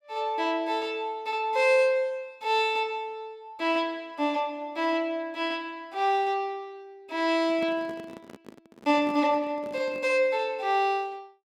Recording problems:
handling noise; from 7.5 to 10 s; peak -9 dB vs average level

